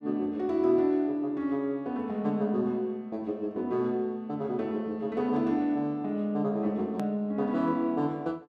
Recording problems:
edit click; at 7 s

